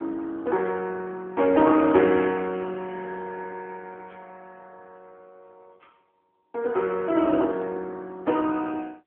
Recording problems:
phone line; 240 Hz to 2.8 kHz, AMR-NB

